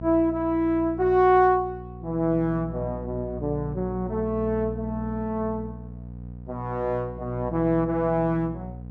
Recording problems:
electrical hum; 60 Hz, harmonics up to 540 Hz, SNR 12 dB

